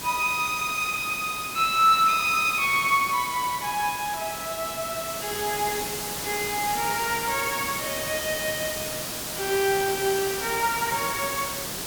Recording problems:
background hiss; slope -2 dB per octave, SNR 6 dB

